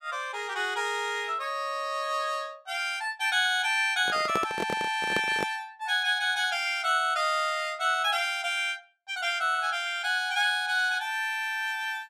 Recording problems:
microphone handling noise; from 4 to 5.5 s; peak 0 dB vs average level

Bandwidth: 15 kHz